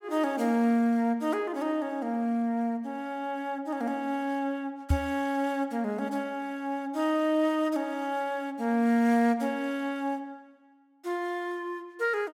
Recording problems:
microphone thump; at 5 s; peak +7 dB vs average level

